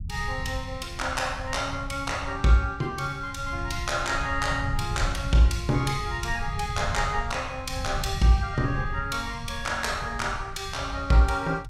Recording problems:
rumble; below 110 Hz, SNR 9 dB

